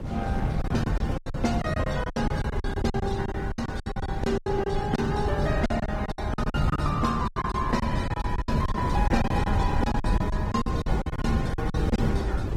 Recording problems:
lossy codec; Opus, then Opus, log-spectral distance 3 dB, nothing above 15.5 kHz
wind on the microphone; below 170 Hz, SNR 0 dB
lost packets; 17% of the sound replaced, filled with silence

